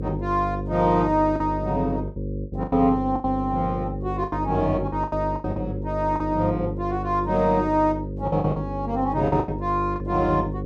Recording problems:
hum; 50 Hz, harmonics up to 550 Hz, SNR 7 dB
lost packets; 9% of the sound replaced, filled with the last packet

